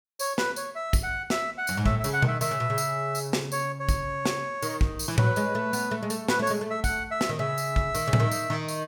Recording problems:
none

